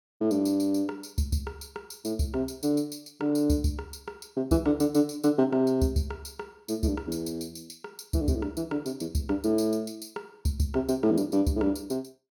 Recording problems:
none

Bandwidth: 18 kHz